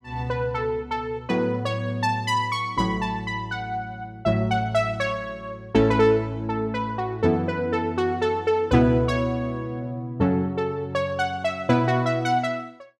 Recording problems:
none

